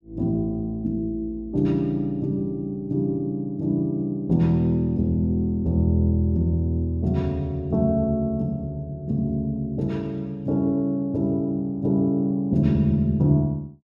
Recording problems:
none

